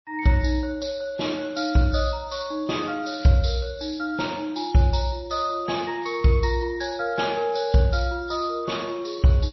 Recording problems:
codec artefacts; MP3, log-spectral distance 4 dB, nothing above 5.7 kHz

